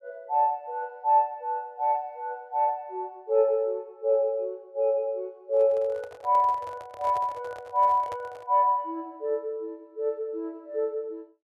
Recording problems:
microphone handling noise; from 5.5 to 8.5 s; peak -9 dB vs average level

